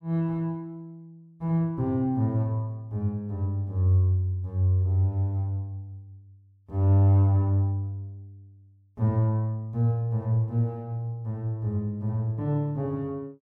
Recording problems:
none

